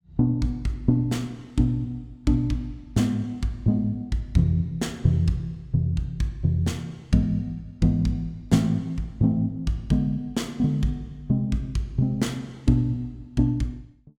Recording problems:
none

